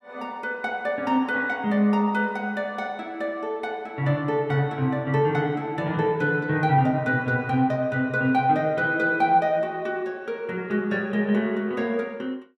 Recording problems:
none

